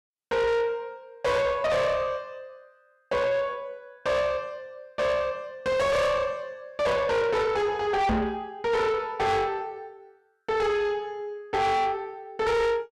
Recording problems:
distortion; soft clipping, signal-to-distortion ratio 7 dB
microphone bump; at 8 s; peak +6 dB vs average level

